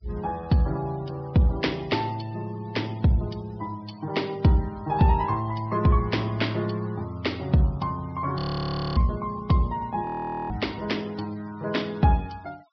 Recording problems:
treble cut off; nothing above 5.5 kHz
noise reduction artefacts; signal-to-artefact ratio 24 dB
audio freezing; at 8.5 s for 0.5 s and at 10 s

